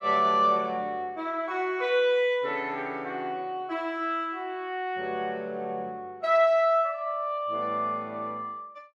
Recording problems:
none

